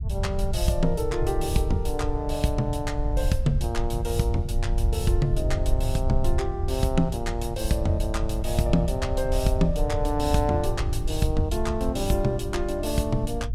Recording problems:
low-frequency rumble; below 82 Hz, SNR 2 dB

